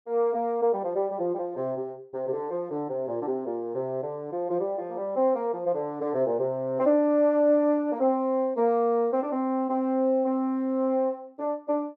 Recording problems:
none

